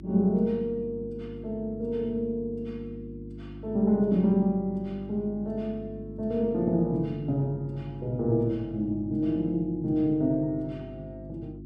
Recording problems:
mains hum; 50 Hz, harmonics up to 350 Hz, SNR 13 dB

